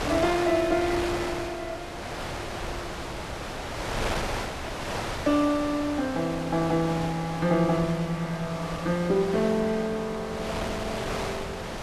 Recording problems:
wind noise; below 2.2 kHz, SNR 6 dB

